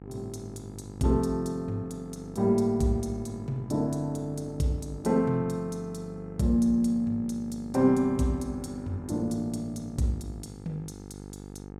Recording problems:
hum; 50 Hz, harmonics up to 1.4 kHz, SNR 15 dB

